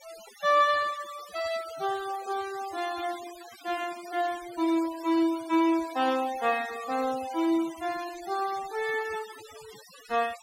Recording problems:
noise reduction artefacts; signal-to-artefact ratio 16 dB

